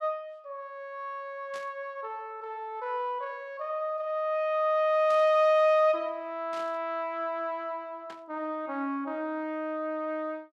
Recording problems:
burst of static; 4 times, first at 1.5 s; peak -13 dB vs average level

